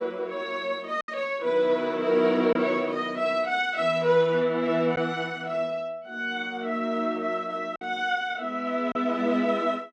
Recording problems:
lost packets; 1.8% of the sound replaced, filled with silence

